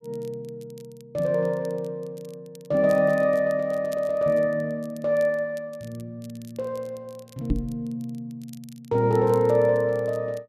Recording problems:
crackle; vinyl, SNR 29 dB
microphone thump; at 7.5 s; peak +3 dB vs average level

